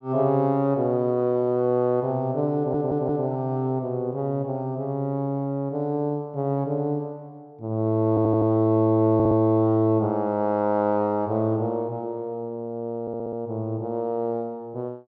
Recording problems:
stutter; 4 times, first at 2.5 s

